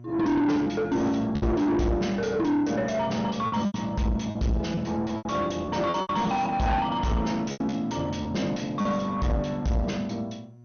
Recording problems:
lossy codec; MP2, log-spectral distance 3 dB, nothing above 6.3 kHz
distorted audio; soft clipping, signal-to-distortion ratio 7 dB
electrical hum; 60 Hz, harmonics up to 720 Hz, SNR 21 dB
packet loss; 7% of the sound replaced, filled with repeated pitch periods

